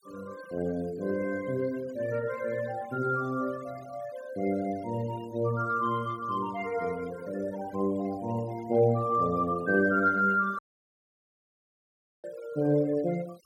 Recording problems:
noise reduction artefacts; signal-to-artefact ratio 23 dB
microphone handling noise; from 9.5 to 11 s; peak -14 dB vs average level
audio cutting out; at 11 s for 1.5 s

